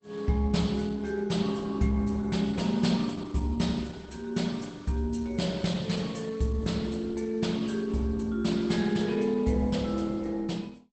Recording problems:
codec artefacts; Opus, log-spectral distance 4 dB, nothing above 8.2 kHz

